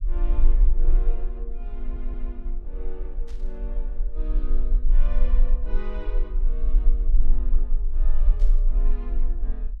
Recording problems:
low-frequency rumble; below 34 Hz, strongest tone 22 Hz, SNR -16 dB
audio stuttering; at 2 s
burst of static; at 3.5 s and at 8.5 s; peak -5 dB vs average level

